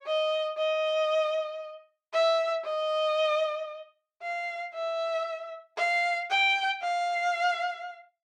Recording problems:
none

